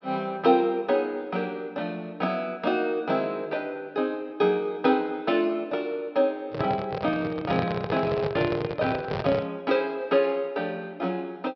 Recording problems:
low-pass filter; nothing above 5.5 kHz
handling noise; from 6.5 to 9.5 s; peak +1 dB vs average level

